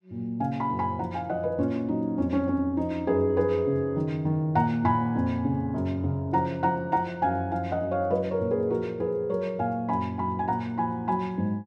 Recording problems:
none

